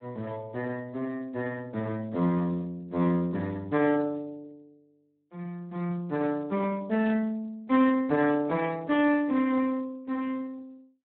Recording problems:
telephone audio; 130 Hz to 3.8 kHz, Speex
burst of static; at 7 s; peak -16 dB vs average level

